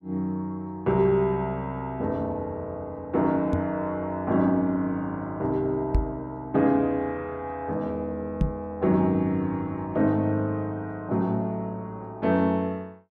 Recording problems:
microphone thump; at 3.5 s, at 6 s and at 8.5 s; peak +6 dB vs average level

